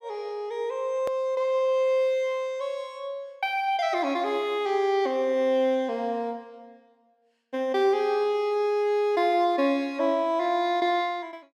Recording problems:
click at an edit; at 1 s

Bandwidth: 15.5 kHz